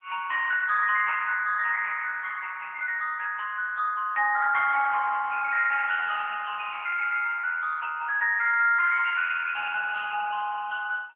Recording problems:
telephone audio; 950 Hz to 2.2 kHz, AMR-NB

